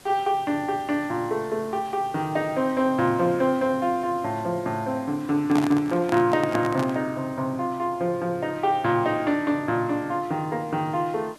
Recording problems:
hiss; slope -3 dB per octave, SNR 25 dB
microphone handling noise; from 5.5 to 7 s; peak 0 dB vs average level

